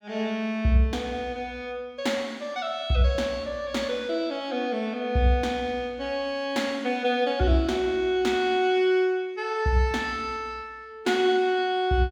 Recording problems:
none

